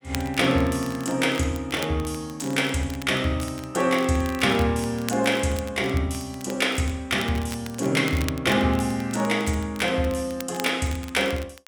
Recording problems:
crackling; vinyl, SNR 17 dB

